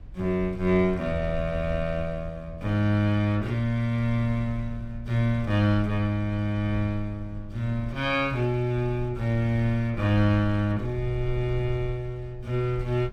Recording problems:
rumble; below 76 Hz, SNR 14 dB

